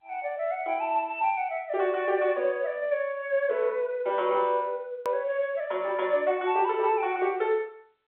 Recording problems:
telephone audio; 300 Hz to 3.8 kHz, G.711
hard cut with a click; at 5 s

